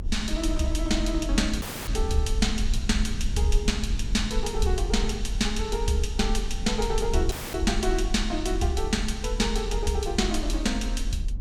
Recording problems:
rumble; below 48 Hz, strongest tone 40 Hz, SNR 4 dB
audio cutting out; at 1.5 s and at 7.5 s

